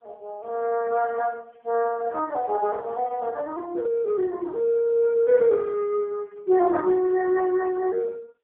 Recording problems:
telephone audio; 320 Hz to 2.3 kHz, AMR-NB

